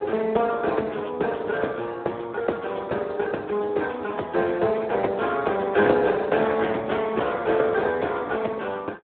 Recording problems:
telephone audio; 260 Hz to 3.5 kHz, Speex

